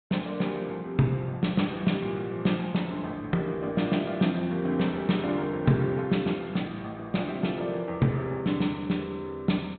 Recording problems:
treble missing; nothing above 4 kHz

